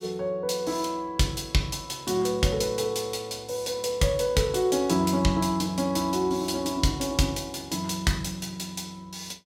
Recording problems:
none

